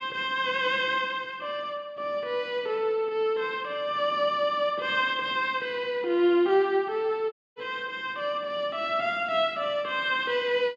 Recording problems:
dropout; at 7.5 s

